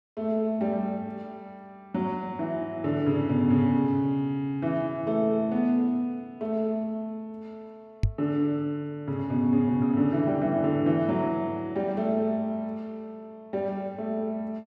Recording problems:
microphone bump; at 8 s; peak +6 dB vs average level

